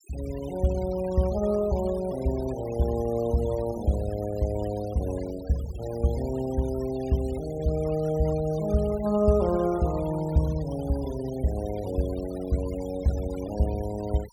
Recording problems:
noise reduction artefacts; signal-to-artefact ratio 19 dB

